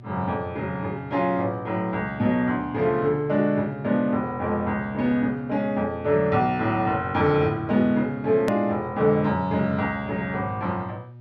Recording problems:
electrical hum; 60 Hz, harmonics up to 600 Hz, SNR 19 dB
edit click; at 8.5 s

